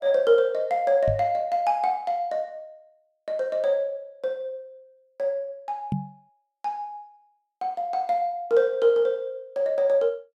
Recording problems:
microphone thump; at 1 s and at 6 s; peak +1 dB vs average level

